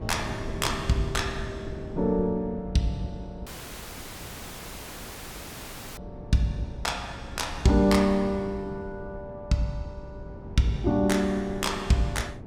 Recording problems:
wind on the microphone; below 250 Hz, SNR 13 dB
audio cutting out; at 3.5 s for 2.5 s

